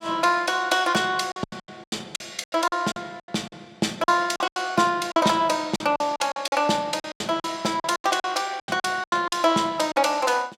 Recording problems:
packet loss; 15% of the sound replaced, filled with silence

